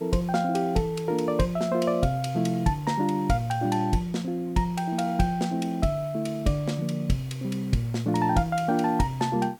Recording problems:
background hiss; slope -4 dB per octave, SNR 26 dB

